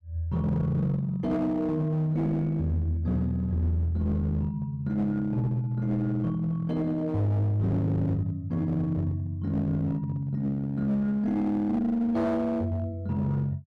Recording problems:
distorted audio; hard clipping, uneven, signal-to-distortion ratio 11 dB

